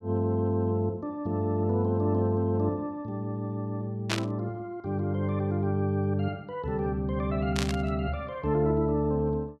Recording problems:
static burst; at 4 s and at 7.5 s; peak +4 dB vs average level

